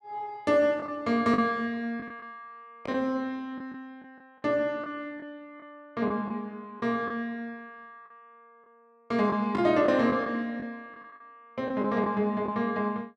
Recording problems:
packet loss; 6% of the sound replaced, filled with the last packet

